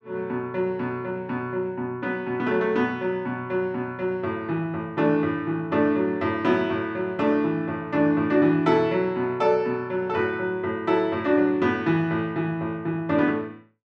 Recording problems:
none

